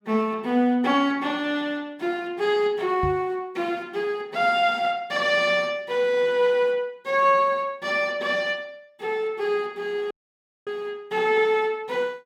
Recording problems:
microphone bump; at 3 s; peak -2 dB vs average level
dropout; at 10 s for 0.5 s

